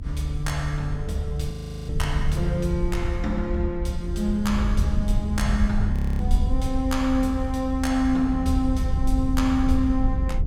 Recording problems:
rumble; below 76 Hz, SNR 2 dB
frozen audio; at 1.5 s and at 6 s

